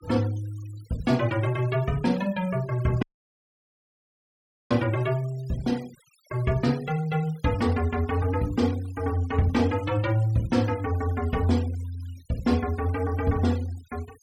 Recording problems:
denoising artefacts; signal-to-artefact ratio 22 dB
audio cutting out; at 3 s for 1.5 s

